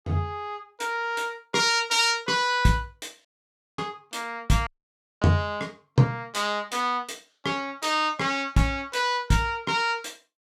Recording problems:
audio cutting out; at 3.5 s for 0.5 s and at 4.5 s for 0.5 s

